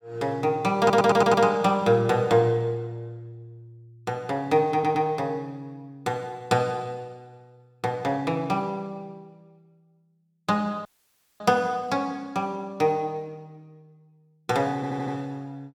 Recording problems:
stutter; at 1 s, at 4.5 s and at 15 s
audio cutting out; at 11 s for 0.5 s

